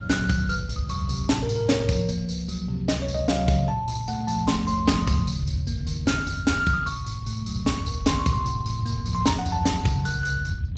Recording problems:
lossy compression; Speex, log-spectral distance 3 dB, nothing above 7.3 kHz
rumble; below 120 Hz, SNR 8 dB

